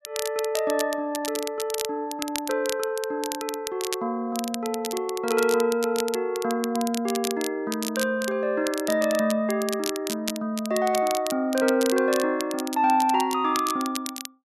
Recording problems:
crackle; vinyl, SNR 9 dB

